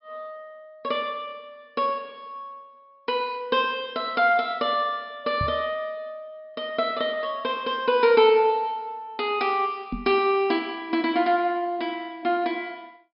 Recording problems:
treble cut off; nothing above 5.5 kHz
microphone thump; at 5.5 s and at 10 s; peak -2 dB vs average level

